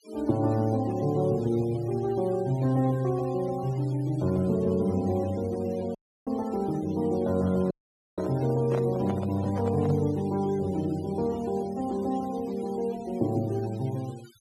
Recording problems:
denoising artefacts; signal-to-artefact ratio 23 dB
dropout; at 6 s and at 7.5 s
microphone handling noise; from 7.5 to 10 s; peak -3 dB vs average level

